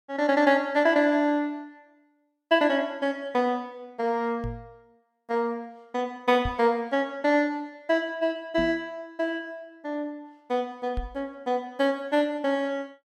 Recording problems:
microphone thump; 4 times, first at 4.5 s; peak -2 dB vs average level

